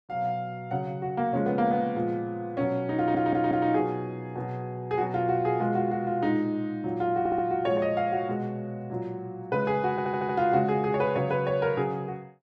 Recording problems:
audio stuttering; at 3 s, at 7 s and at 10 s

